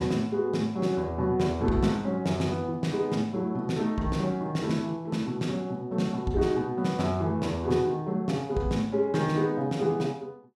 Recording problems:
none

